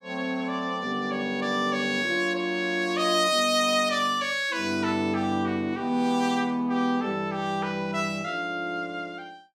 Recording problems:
none

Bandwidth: 16.5 kHz